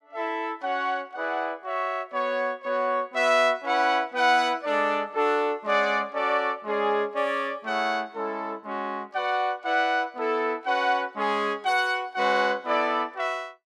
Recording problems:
none

